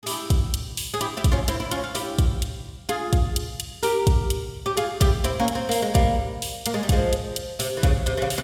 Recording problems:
none

